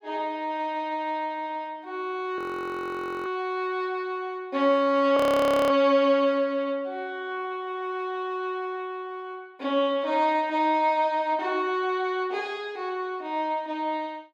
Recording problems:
audio freezing; at 2.5 s for 1 s and at 5 s for 0.5 s

